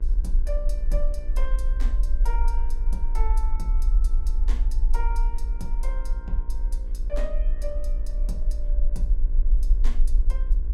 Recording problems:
electrical hum; 60 Hz, harmonics up to 1.7 kHz, SNR 11 dB
rumble; below 42 Hz, SNR -12 dB

